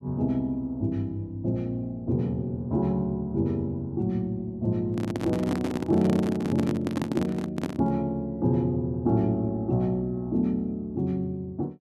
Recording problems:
microphone handling noise; from 5 to 8 s; peak +1 dB vs average level

